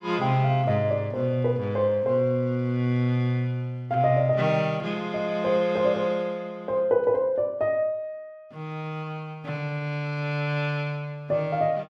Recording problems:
none

